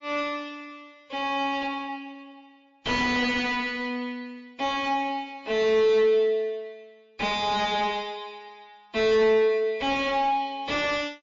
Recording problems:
lossy compression; MP3, then MP3, log-spectral distance 2 dB, nothing above 7.1 kHz
distorted audio; soft clipping, signal-to-distortion ratio 3 dB

